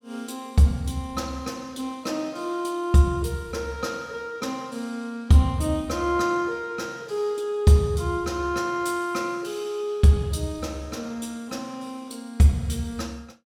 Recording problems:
none

